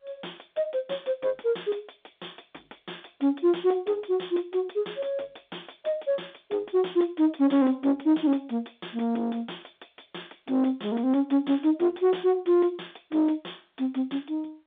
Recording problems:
telephone audio; 240 Hz to 3.6 kHz, G.711
distortion; soft clipping, signal-to-distortion ratio 11 dB

